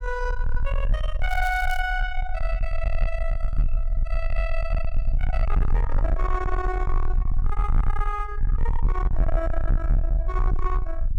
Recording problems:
distorted audio; soft clipping, signal-to-distortion ratio 7 dB
rumble; below 46 Hz, SNR -3 dB
crackling; at 1.5 s; loose cable, SNR 15 dB

